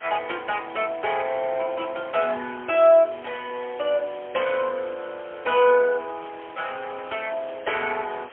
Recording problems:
telephone audio; 280 Hz to 3.3 kHz, AMR-NB, then MP3
background hiss; SNR 21 dB

